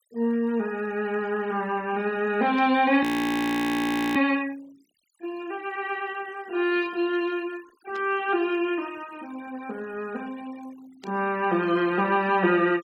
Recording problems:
denoising artefacts; signal-to-artefact ratio 25 dB
burst of static; at 2.5 s, at 8 s and at 11 s; peak -13 dB vs average level
audio freezing; at 3 s for 1 s

